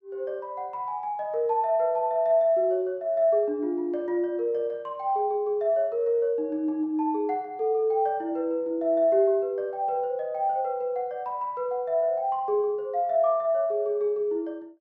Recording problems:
none

